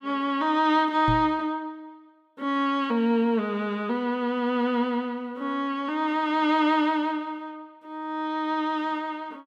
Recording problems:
knock on the microphone; at 1 s; peak 0 dB vs average level

